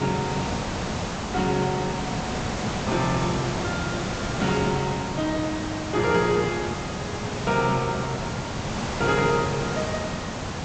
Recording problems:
treble cut off; nothing above 8 kHz
hiss; slope -5 dB per octave, SNR 3 dB

